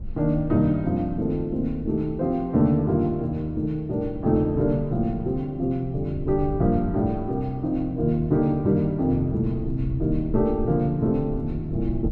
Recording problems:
low-frequency rumble; below 94 Hz, SNR 13 dB

